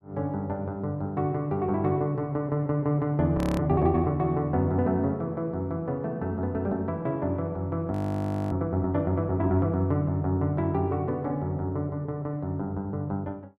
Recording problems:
audio freezing; at 3.5 s and at 8 s for 0.5 s

